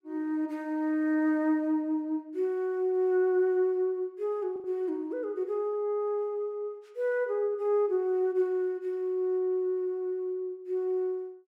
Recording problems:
lost packets; 0.7% of the sound replaced, filled with the last packet

